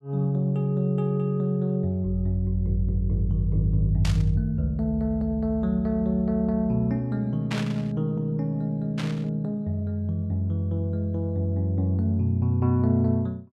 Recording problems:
static burst; at 4 s, at 7.5 s and at 9 s; peak -3 dB vs average level

